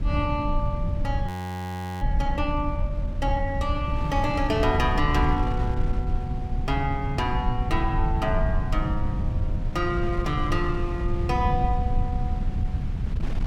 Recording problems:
rumble; below 100 Hz, SNR 0 dB
wind on the microphone; below 130 Hz, SNR 8 dB
frozen audio; at 1.5 s for 0.5 s

